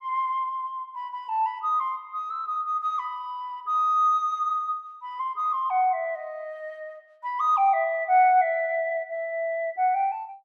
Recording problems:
none

